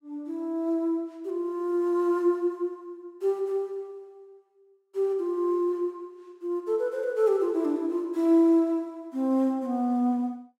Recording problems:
none

